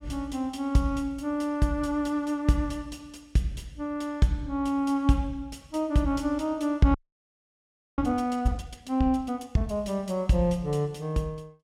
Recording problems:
audio freezing; at 7 s for 1 s

